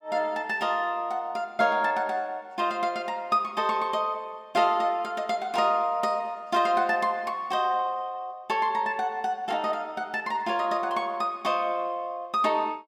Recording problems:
none

